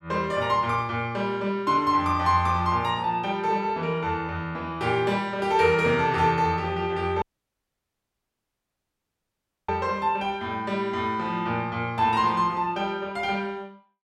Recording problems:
audio cutting out; at 7 s for 2.5 s

